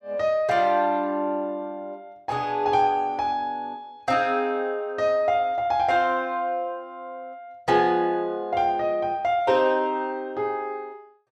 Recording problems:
none

